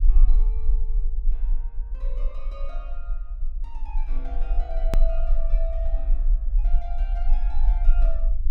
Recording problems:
rumble; below 36 Hz, strongest tone 20 Hz, SNR -15 dB
click at an edit; at 5 s

